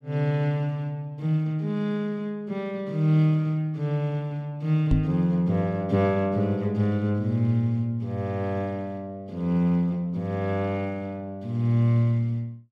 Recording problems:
microphone bump; at 5 s; peak +6 dB vs average level

